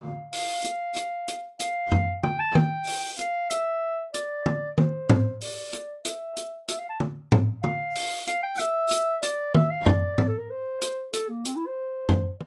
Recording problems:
lossy compression; AAC, log-spectral distance 2 dB, nothing above 10.7 kHz

